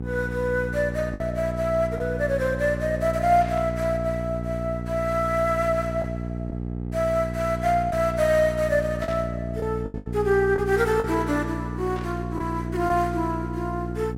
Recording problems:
hum; 60 Hz, harmonics up to 540 Hz, SNR 6 dB
packet loss; 3% of the sound replaced, filled with the last packet
burst of static; at 3.5 s, at 9 s and at 12 s; peak -12 dB vs average level

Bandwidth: 16.5 kHz